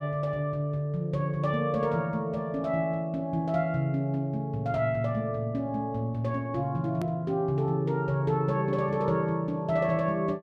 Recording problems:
hard cut with a click; at 7 s

